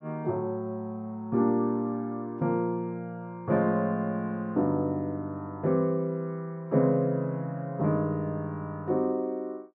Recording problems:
none

